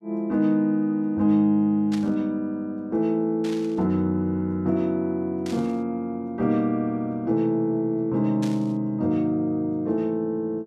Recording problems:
burst of static; 4 times, first at 2 s; peak -10 dB vs average level

